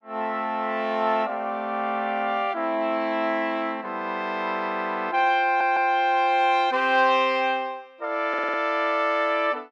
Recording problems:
stutter; at 5.5 s and at 8.5 s

